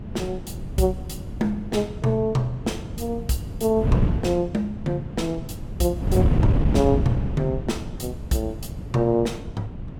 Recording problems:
electrical hum; 60 Hz, harmonics up to 420 Hz, SNR 26 dB
wind on the microphone; below 190 Hz, SNR 3 dB

